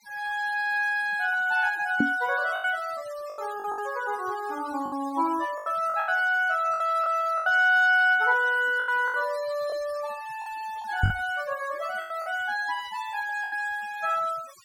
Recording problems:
denoising artefacts; signal-to-artefact ratio 19 dB
lost packets; 8% of the sound replaced, filled with the last packet
knock on the microphone; at 2 s and at 11 s; peak +5 dB vs average level

